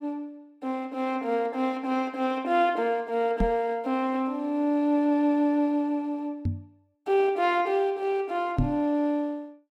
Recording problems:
microphone bump; at 3.5 s, at 6.5 s and at 8.5 s; peak +5 dB vs average level

